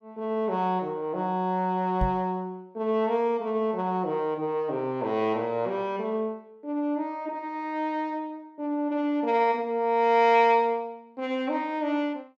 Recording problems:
knock on the microphone; at 2 s; peak +2 dB vs average level

